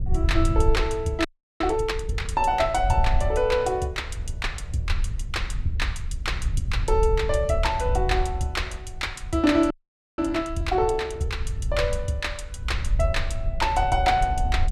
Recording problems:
wind noise; below 72 Hz, SNR 4 dB
audio freezing; at 1.5 s and at 9.5 s

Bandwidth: 15.5 kHz